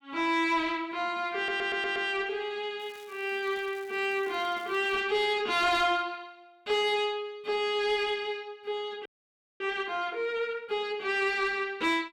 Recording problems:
distortion; soft clipping, signal-to-distortion ratio 10 dB
audio stuttering; at 1.5 s
crackle; from 3 to 5 s; loose cable, SNR 25 dB
audio freezing; at 9 s for 0.5 s

